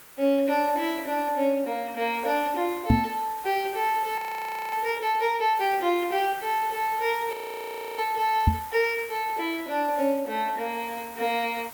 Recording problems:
background hiss; SNR 16 dB
knock on the microphone; at 3 s and at 8.5 s; peak +9 dB vs average level
audio freezing; at 4 s for 0.5 s and at 7.5 s for 0.5 s

